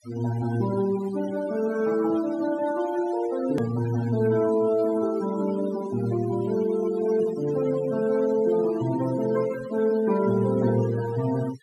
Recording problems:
noise reduction artefacts; signal-to-artefact ratio 16 dB
edit click; at 3.5 s

